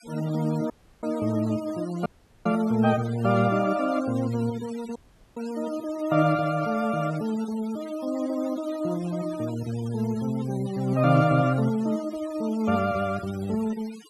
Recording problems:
denoising artefacts; signal-to-artefact ratio 19 dB
audio cutting out; at 0.5 s, at 2 s and at 5 s

